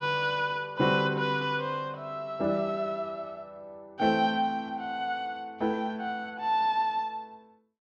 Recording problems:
none

